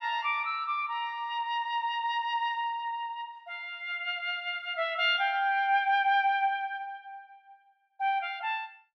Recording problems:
none

